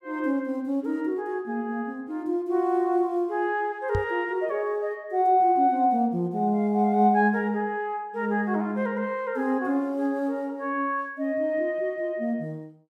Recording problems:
microphone thump; at 4 s; peak 0 dB vs average level

